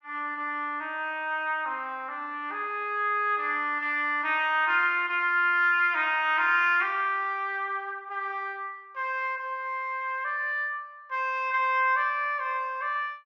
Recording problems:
none

